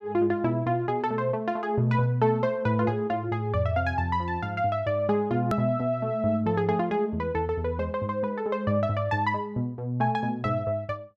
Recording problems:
hard cut with a click; at 5.5 s

